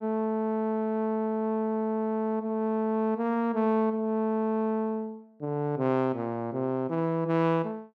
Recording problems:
none

